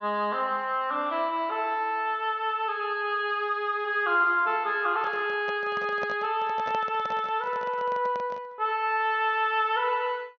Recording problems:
treble cut off; nothing above 6.5 kHz
handling noise; from 5 to 8.5 s; peak -5 dB vs average level

